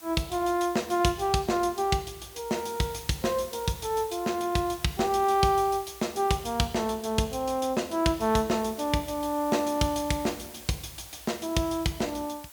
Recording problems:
hiss; slope 0 dB per octave, SNR 17 dB

